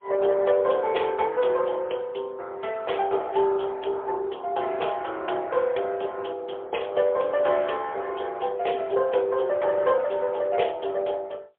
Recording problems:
phone line; 320 Hz to 3.4 kHz, AMR-NB, then MP3

